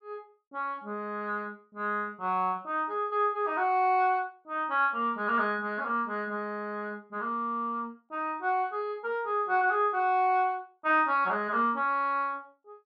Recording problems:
none

